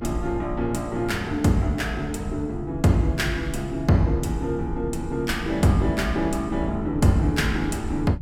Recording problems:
low-frequency rumble; below 96 Hz, SNR 12 dB

